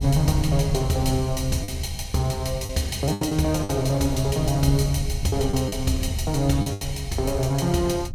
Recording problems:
wind on the microphone; below 98 Hz, SNR 9 dB
lost packets; 5% of the sound replaced, filled with the last packet

